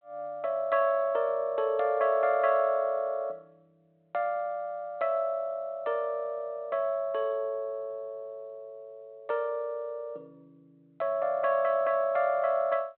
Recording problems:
phone line; 220 Hz to 3.6 kHz, G.726

